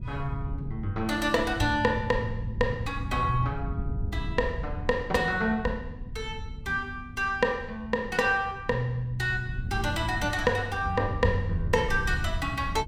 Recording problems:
wind on the microphone; below 120 Hz, SNR 9 dB

